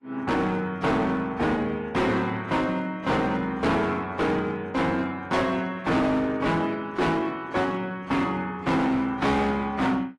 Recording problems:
lossy compression; AAC, log-spectral distance 2 dB, nothing above 11.3 kHz
distorted audio; hard clipping, signal-to-distortion ratio 7 dB

